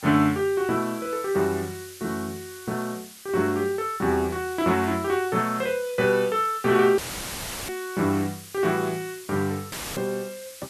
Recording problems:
hiss; SNR 17 dB
audio cutting out; at 7 s for 0.5 s and at 9.5 s; filled with static

